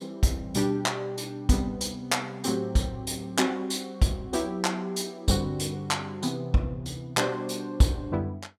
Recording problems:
none

